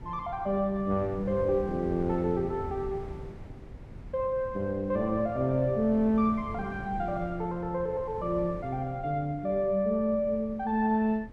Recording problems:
wind noise; below 220 Hz, SNR 15 dB

